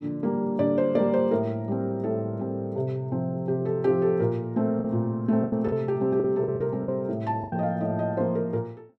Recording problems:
packet loss; 5% of the sound replaced, filled with the last packet

